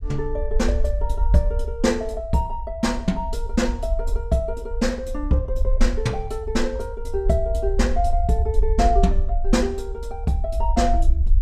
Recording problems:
rumble; below 56 Hz, SNR 2 dB

